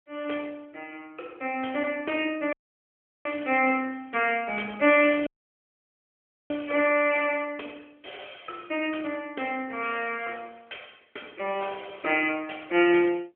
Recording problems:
telephone audio; 280 Hz to 3.3 kHz, AMR-NB
audio cutting out; at 2.5 s for 0.5 s and at 5.5 s for 1 s

